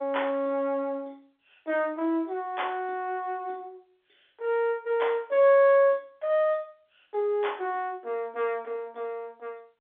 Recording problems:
telephone audio; 240 Hz to 3.5 kHz, G.711

